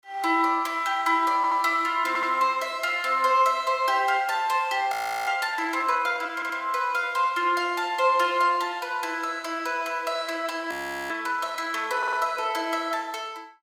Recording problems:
stutter; 4 times, first at 1.5 s
audio freezing; at 5 s and at 11 s

